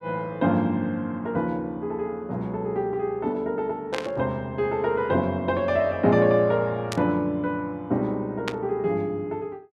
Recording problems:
static burst; at 4 s, at 7 s and at 8.5 s; peak 0 dB vs average level

